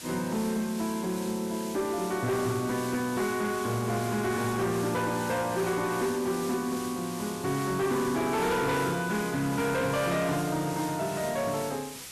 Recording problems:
distortion; soft clipping, signal-to-distortion ratio 11 dB
background hiss; slope +1 dB per octave, SNR 12 dB

